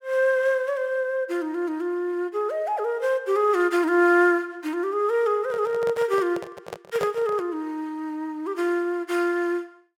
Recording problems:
handling noise; from 5.5 to 7.5 s; peak -3 dB vs average level

